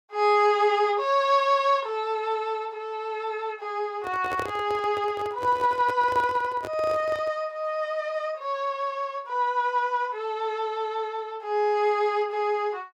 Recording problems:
handling noise; from 4 to 7.5 s; peak -4 dB vs average level

